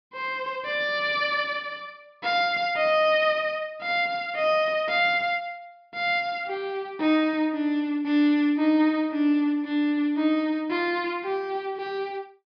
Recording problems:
treble missing; nothing above 5.5 kHz

